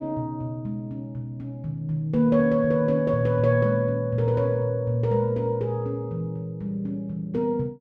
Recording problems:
none

